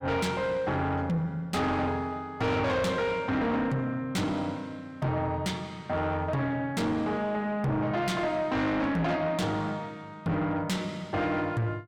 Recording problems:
distortion; soft clipping, signal-to-distortion ratio 7 dB

